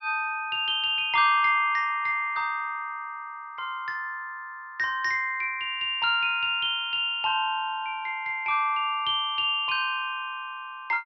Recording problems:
treble cut off; nothing above 5.5 kHz

